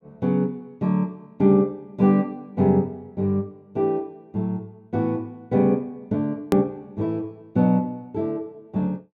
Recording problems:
click at an edit; at 6.5 s

